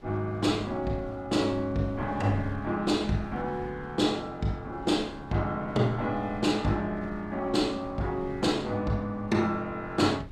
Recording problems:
wind noise; below 190 Hz, SNR 18 dB

